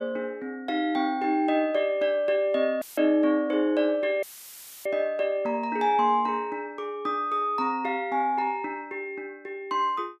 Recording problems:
dropout; at 3 s and at 4 s for 0.5 s; filled with static

